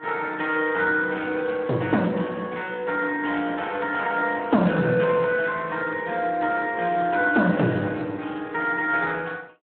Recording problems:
phone line; 220 Hz to 3.5 kHz, Speex

